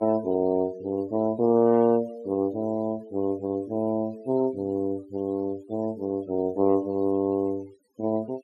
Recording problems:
denoising artefacts; signal-to-artefact ratio 25 dB

